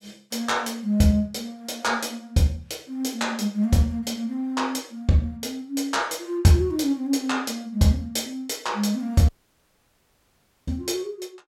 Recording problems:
audio cutting out; at 9.5 s for 1.5 s

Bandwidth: 16.5 kHz